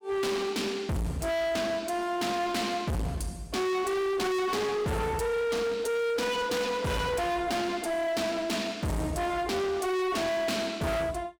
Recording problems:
distortion; hard clipping, signal-to-distortion ratio 6 dB

